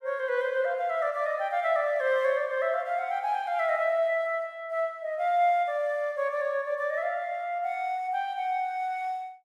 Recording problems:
none

